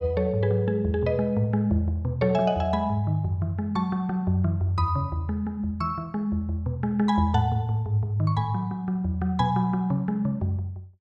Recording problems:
none

